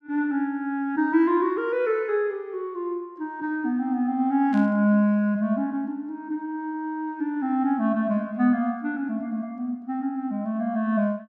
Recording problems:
static burst; at 4.5 s; peak -16 dB vs average level

